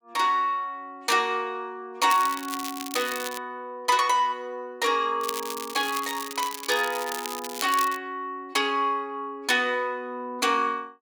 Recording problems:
crackling; from 2 to 3.5 s and from 5 to 8 s; loose cable, SNR 9 dB

